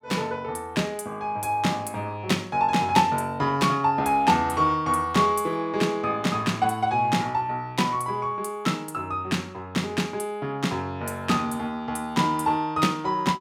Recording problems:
none

